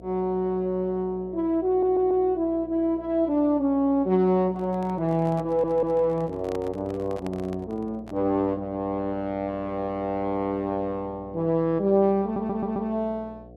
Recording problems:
hum; 60 Hz, harmonics up to 720 Hz, SNR 21 dB
audio stuttering; at 1.5 s, at 5.5 s and at 12 s
handling noise; from 4.5 to 8 s; peak -9 dB vs average level

